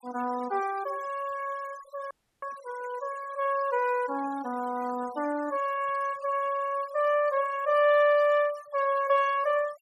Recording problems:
noise reduction artefacts; signal-to-artefact ratio 20 dB
dropout; at 2 s

